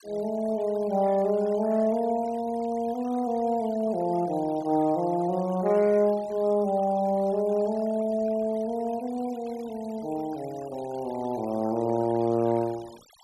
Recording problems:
denoising artefacts; signal-to-artefact ratio 24 dB

